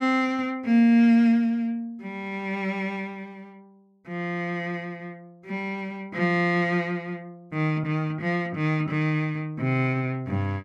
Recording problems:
none

